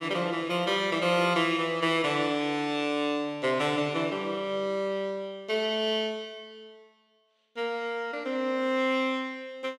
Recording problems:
none

